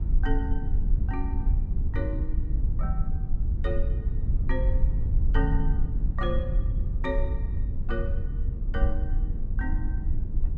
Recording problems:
low-frequency rumble; below 66 Hz, SNR -8 dB

